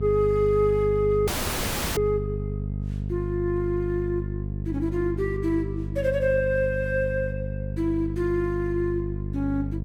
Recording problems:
hum; 50 Hz, harmonics up to 500 Hz, SNR 5 dB
dropout; at 1.5 s for 0.5 s

